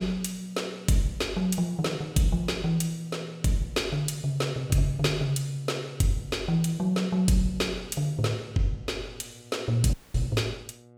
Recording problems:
hum; 60 Hz, harmonics up to 840 Hz, SNR 25 dB
dropout; at 10 s

